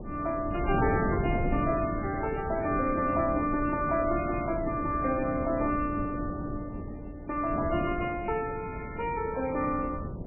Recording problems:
codec artefacts; MP3, log-spectral distance 3 dB, nothing above 2.4 kHz
wind on the microphone; below 300 Hz, SNR 6 dB

